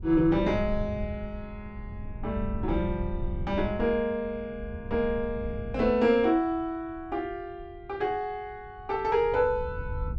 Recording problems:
wind noise; below 100 Hz, SNR 10 dB

